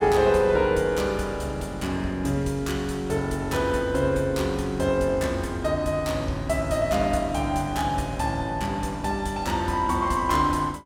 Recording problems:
none

